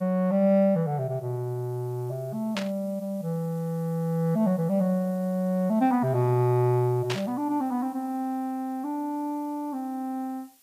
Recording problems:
background hiss; slope +1 dB per octave, SNR 28 dB
static burst; at 2.5 s and at 7 s; peak 0 dB vs average level

